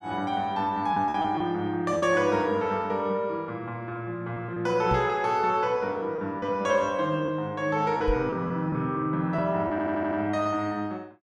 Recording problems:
packet loss; 4% of the sound replaced, filled with repeated pitch periods
knock on the microphone; at 5 s and at 8 s; peak +1 dB vs average level
stutter; at 9.5 s

